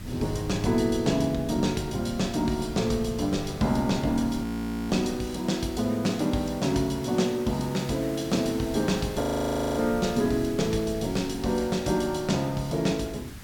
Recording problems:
background hiss; SNR 19 dB
wind on the microphone; below 160 Hz, SNR 15 dB
audio freezing; at 4.5 s and at 9 s for 0.5 s

